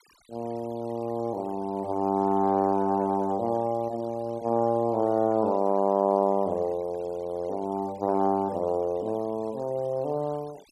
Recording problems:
noise reduction artefacts; signal-to-artefact ratio 27 dB

